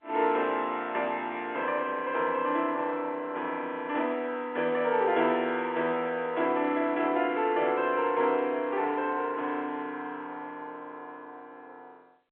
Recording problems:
phone line; 220 Hz to 3.5 kHz, G.711

